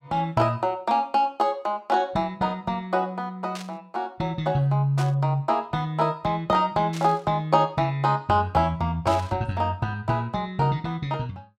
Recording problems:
static burst; 4 times, first at 3.5 s; peak -8 dB vs average level

